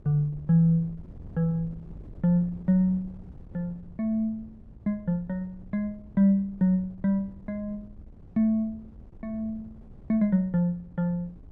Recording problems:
wind on the microphone; below 160 Hz, SNR 21 dB

